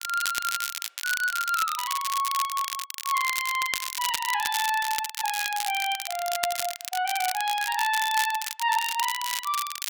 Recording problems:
crackling; vinyl, SNR 4 dB

